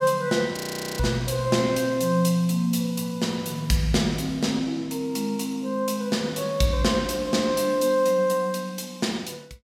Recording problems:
audio freezing; at 0.5 s

